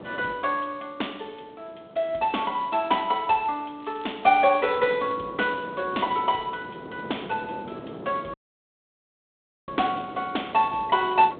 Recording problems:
phone line; 240 Hz to 3.8 kHz, G.726
wind on the microphone; below 580 Hz, SNR 16 dB
crackle; at 4 s; loose cable, SNR 28 dB
audio cutting out; at 8.5 s for 1.5 s

